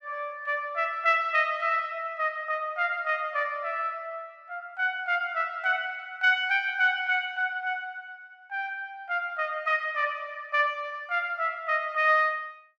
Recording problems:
none

